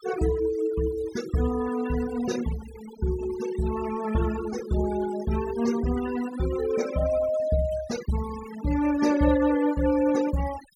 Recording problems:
denoising artefacts; signal-to-artefact ratio 14 dB

